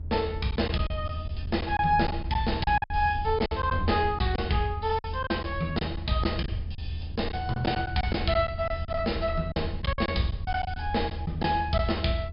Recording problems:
treble cut off; nothing above 5.5 kHz
low-frequency rumble; below 82 Hz, SNR 7 dB
lost packets; 9% of the sound replaced, filled with silence

